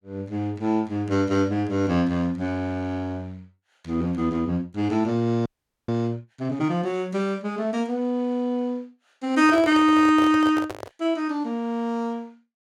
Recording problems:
audio freezing; at 5.5 s
handling noise; from 9.5 to 11 s; peak -5 dB vs average level

